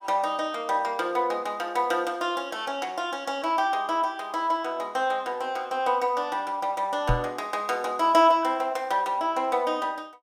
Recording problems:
microphone thump; at 7 s; peak +4 dB vs average level

